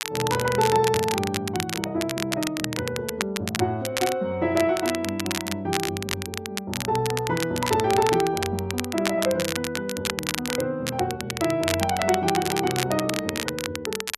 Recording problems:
crackling; vinyl, SNR 5 dB

